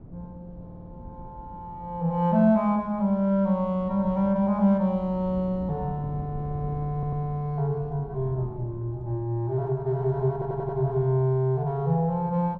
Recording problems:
wind noise; below 210 Hz, SNR 18 dB
audio stuttering; at 0.5 s, at 7 s and at 10 s

